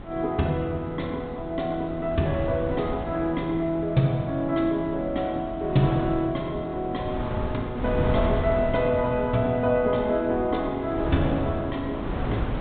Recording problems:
treble cut off; nothing above 4 kHz
wind on the microphone; below 400 Hz, SNR 8 dB

